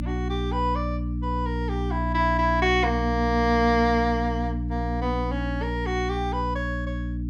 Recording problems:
hum; 60 Hz, harmonics up to 300 Hz, SNR 3 dB

